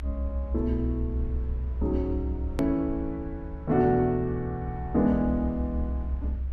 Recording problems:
rumble; below 70 Hz, strongest tone 64 Hz, SNR 5 dB
hard cut with a click; at 2.5 s

